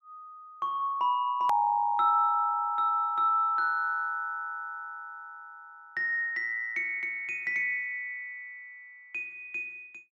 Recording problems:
hard cut with a click; at 1.5 s

